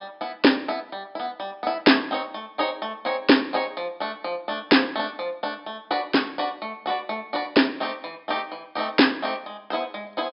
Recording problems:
treble cut off; nothing above 5.2 kHz

